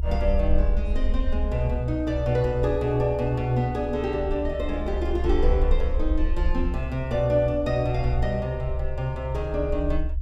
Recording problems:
rumble; below 66 Hz, SNR 3 dB

